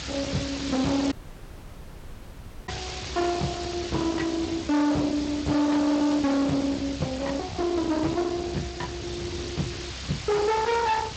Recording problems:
lossy codec; Speex, log-spectral distance 13 dB
distorted audio; hard clipping, signal-to-distortion ratio 6 dB
hiss; slope +1 dB per octave, SNR 11 dB
rumble; below 620 Hz, SNR 10 dB
dropout; at 1 s for 1.5 s

